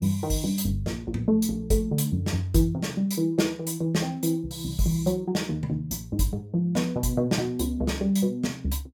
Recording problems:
none

